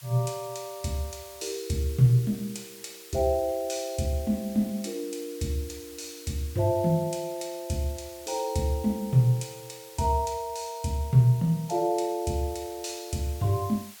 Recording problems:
hiss; slope +2 dB per octave, SNR 18 dB

